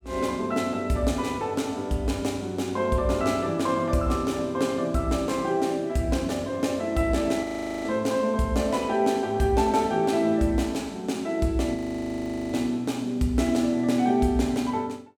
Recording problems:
frozen audio; at 7.5 s and at 12 s for 1 s

